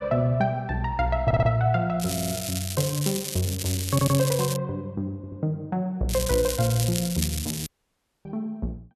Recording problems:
audio stuttering; 4 times, first at 1.5 s
crackling; from 2 to 4.5 s and from 6 to 7.5 s; loose cable, SNR 5 dB
dropout; at 7.5 s for 0.5 s

